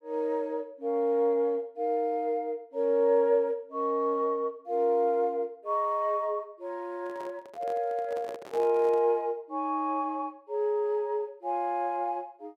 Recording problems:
microphone handling noise; from 7 to 9 s; peak -9 dB vs average level

